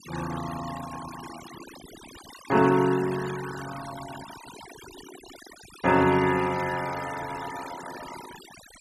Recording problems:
noise reduction artefacts; signal-to-artefact ratio 14 dB

